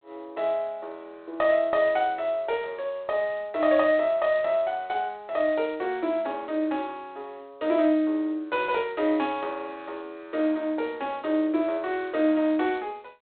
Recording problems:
phone line; 260 Hz to 3.8 kHz, G.726

